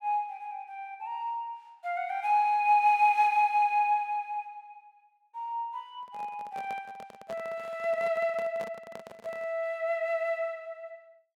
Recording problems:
microphone handling noise; from 6 to 9.5 s; peak -10 dB vs average level

